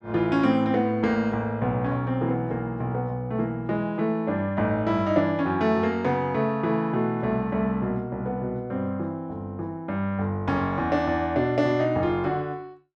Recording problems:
none

